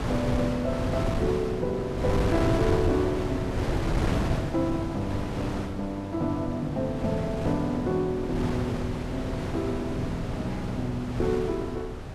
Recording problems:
wind noise; below 480 Hz, SNR 2 dB

